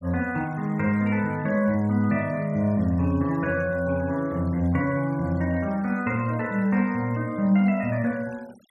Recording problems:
noise reduction artefacts; signal-to-artefact ratio 27 dB

